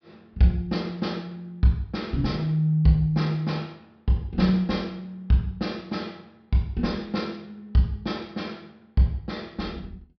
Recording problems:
treble missing; nothing above 5.5 kHz

